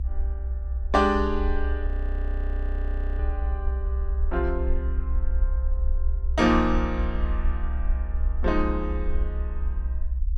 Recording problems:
low-frequency rumble; below 64 Hz, SNR 1 dB
frozen audio; at 2 s for 1.5 s

